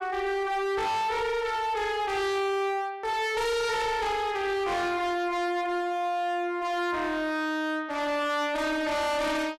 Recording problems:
distortion; hard clipping, signal-to-distortion ratio 6 dB

